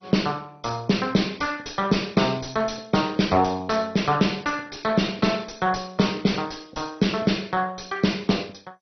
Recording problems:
lossy codec; MP2, log-spectral distance 6 dB, nothing above 6 kHz
distorted audio; soft clipping, signal-to-distortion ratio 10 dB

